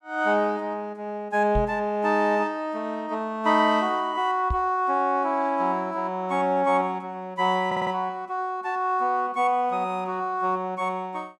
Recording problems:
knock on the microphone; at 1.5 s and at 4.5 s; peak 0 dB vs average level
stutter; at 7.5 s

